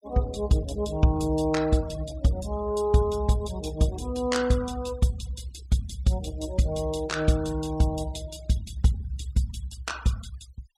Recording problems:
denoising artefacts; signal-to-artefact ratio 21 dB

